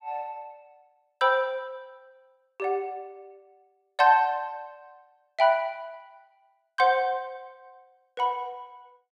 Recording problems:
none

